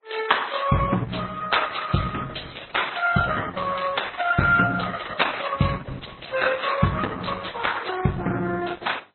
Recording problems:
codec artefacts; Opus, then MP3, log-spectral distance 8 dB, nothing above 4.1 kHz

